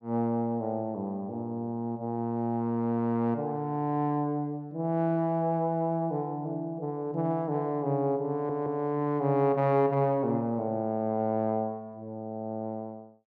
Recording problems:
audio stuttering; at 8.5 s

